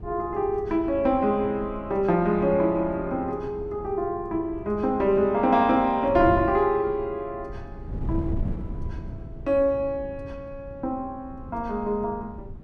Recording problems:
wind noise; below 170 Hz, SNR 13 dB

